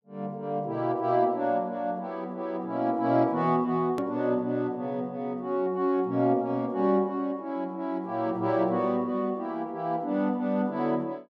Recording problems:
click at an edit; at 4 s

